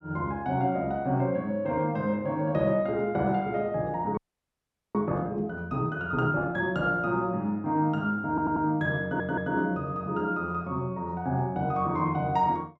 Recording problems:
frozen audio; at 4 s for 1 s
audio stuttering; at 8.5 s and at 9 s

